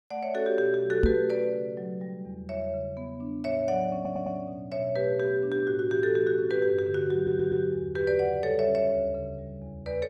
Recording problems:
microphone thump; at 1 s; peak +7 dB vs average level
audio stuttering; at 4 s and at 7 s

